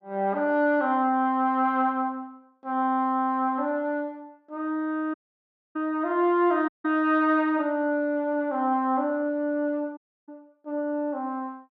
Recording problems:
audio cutting out; at 5 s for 0.5 s, at 6.5 s and at 10 s

